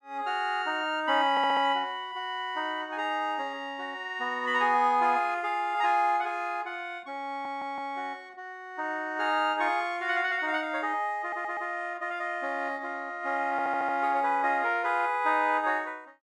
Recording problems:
audio stuttering; 4 times, first at 1.5 s

